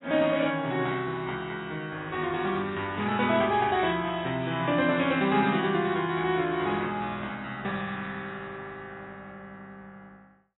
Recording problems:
lossy compression; AAC, log-spectral distance 3 dB, nothing above 3.6 kHz

